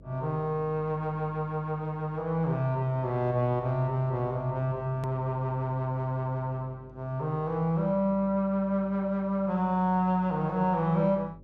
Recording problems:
hum; 50 Hz, harmonics up to 600 Hz, SNR 22 dB
hard cut with a click; at 5 s

